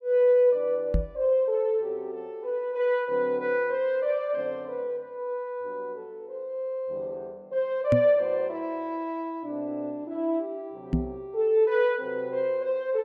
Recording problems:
microphone thump; at 1 s, at 8 s and at 11 s; peak +5 dB vs average level

